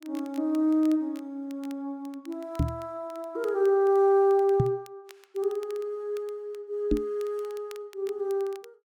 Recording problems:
crackle; vinyl, SNR 27 dB
knock on the microphone; at 2.5 s, at 4.5 s and at 7 s; peak +6 dB vs average level

